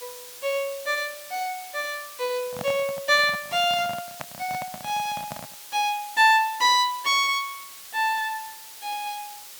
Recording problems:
hiss; slope +2 dB per octave, SNR 15 dB
handling noise; from 2.5 to 5.5 s; peak -6 dB vs average level

